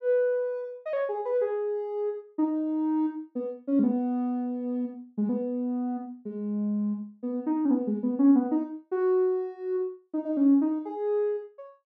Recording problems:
none

